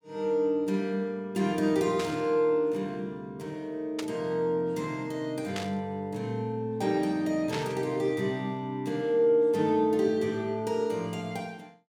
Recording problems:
burst of static; 4 times, first at 2 s; peak -3 dB vs average level

